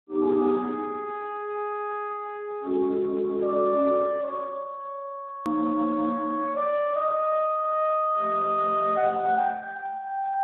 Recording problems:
phone line; 240 Hz to 3.7 kHz, Speex
click at an edit; at 5.5 s

